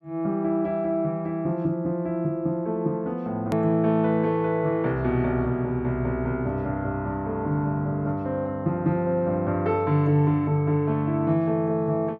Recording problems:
edit click; at 3.5 s

